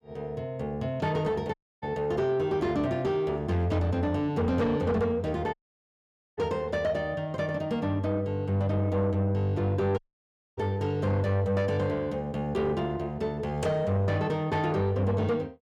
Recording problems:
distortion; soft clipping, signal-to-distortion ratio 11 dB
dropout; at 1.5 s, at 5.5 s for 1 s and at 10 s for 0.5 s

